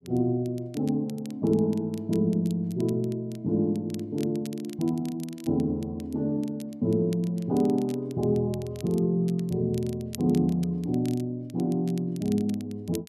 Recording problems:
crackling; vinyl, SNR 22 dB

